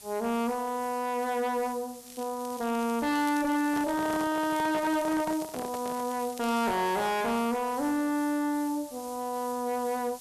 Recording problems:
distortion; hard clipping, uneven, signal-to-distortion ratio 6 dB
background hiss; SNR 17 dB
crackling; from 2 to 6.5 s; loose cable, SNR 19 dB
handling noise; from 3.5 to 6 s; peak -4 dB vs average level

